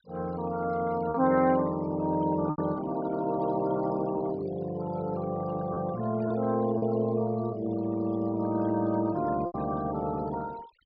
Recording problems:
low-pass filter; nothing above 5.5 kHz
noise reduction artefacts; signal-to-artefact ratio 19 dB
lost packets; 3% of the sound replaced, filled with repeated pitch periods

